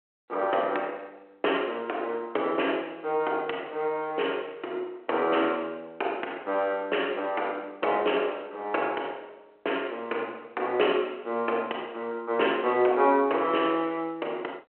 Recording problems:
phone line; 300 Hz to 3.2 kHz, G.726

